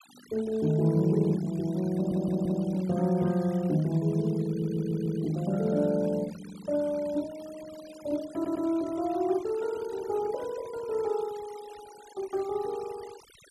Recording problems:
denoising artefacts; signal-to-artefact ratio 22 dB
stutter; at 2 s, at 4.5 s and at 8.5 s

